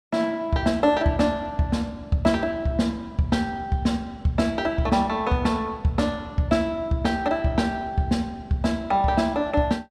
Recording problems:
none

